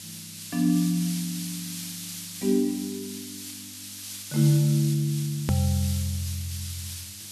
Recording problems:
hum; 50 Hz, harmonics up to 600 Hz, SNR 26 dB
hiss; slope +6 dB per octave, SNR 10 dB
click at an edit; at 5.5 s

